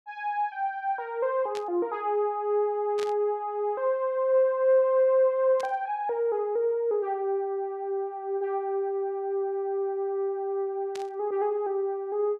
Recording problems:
static burst; 4 times, first at 1.5 s; peak -9 dB vs average level

